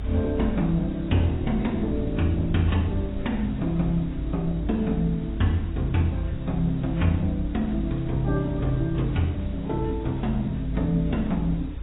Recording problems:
lossy codec; AAC, log-spectral distance 5 dB, nothing above 3.7 kHz
background hiss; SNR 20 dB
rumble; below 70 Hz, strongest tone 54 Hz, SNR 8 dB

